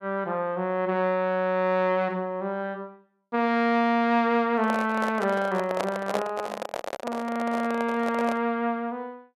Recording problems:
microphone handling noise; from 4.5 to 8.5 s; peak +3 dB vs average level

